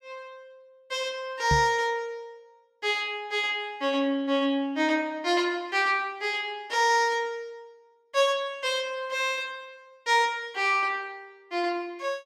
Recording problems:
microphone thump; at 1.5 s; peak +3 dB vs average level

